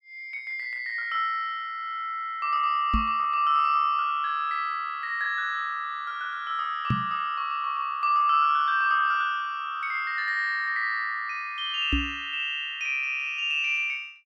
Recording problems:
microphone thump; at 3 s, at 7 s and at 12 s; peak +4 dB vs average level

